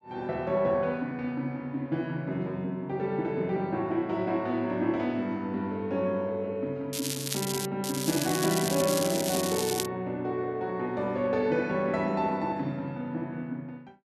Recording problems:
crackle; at 7 s and from 8 to 10 s; loose cable, SNR 3 dB

